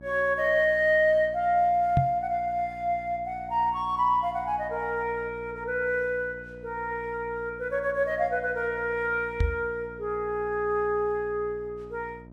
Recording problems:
hum; 60 Hz, harmonics up to 1 kHz, SNR 20 dB
microphone thump; at 2 s and at 9.5 s; peak +5 dB vs average level

